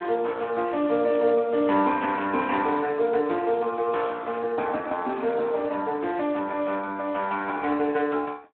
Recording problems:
phone line; 260 Hz to 3.5 kHz, Speex

